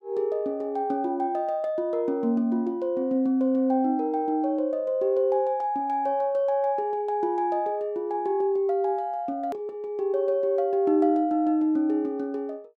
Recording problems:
edit click; at 9.5 s

